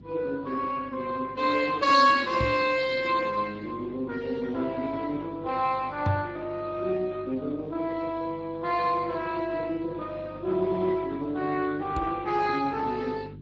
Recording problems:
codec artefacts; Speex, log-spectral distance 4 dB, nothing above 7.3 kHz
hum; 50 Hz, harmonics up to 400 Hz, SNR 19 dB
microphone thump; at 2.5 s, at 6 s and at 12 s; peak +4 dB vs average level

